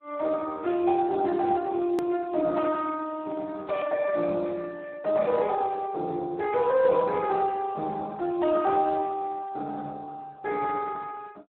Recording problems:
phone line; 280 Hz to 2.5 kHz, Speex
click at an edit; at 2 s

